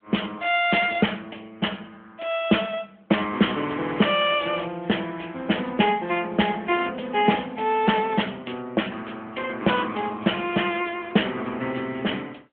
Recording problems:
phone line; 150 Hz to 3.3 kHz, AMR-NB

